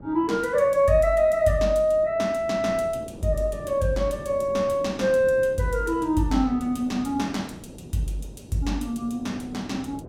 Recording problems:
wind on the microphone; below 400 Hz, SNR 18 dB

